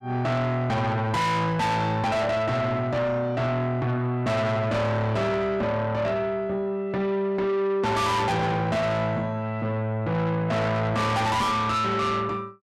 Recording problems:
distorted audio; soft clipping, signal-to-distortion ratio 6 dB

